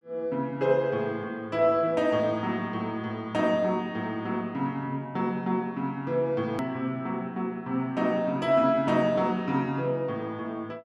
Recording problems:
click at an edit; at 6.5 s

